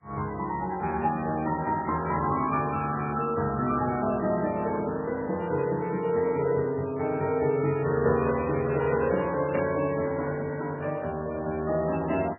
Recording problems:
lossy codec; MP2, then MP3, log-spectral distance 3 dB, nothing above 2.5 kHz
static burst; at 9.5 s; peak -9 dB vs average level

